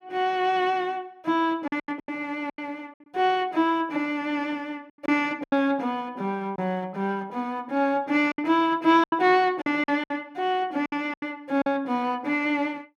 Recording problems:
packet loss; 7% of the sound replaced, filled with silence

